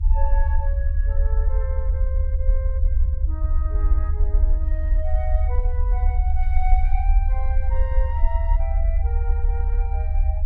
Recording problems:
rumble; below 68 Hz, SNR -13 dB

